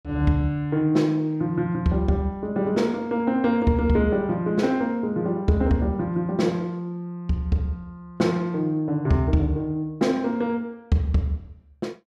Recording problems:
none

